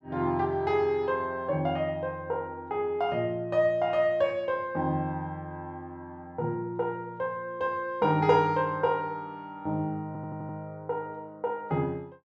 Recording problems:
audio stuttering; at 10 s

